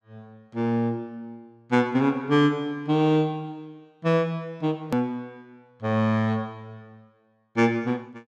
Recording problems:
click at an edit; at 5 s

